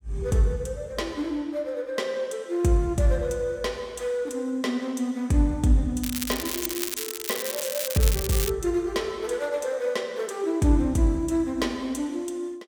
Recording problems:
crackle; from 6 to 8.5 s; loose cable, SNR 3 dB

